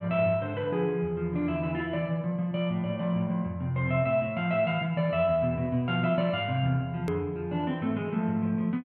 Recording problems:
click at an edit; at 7 s

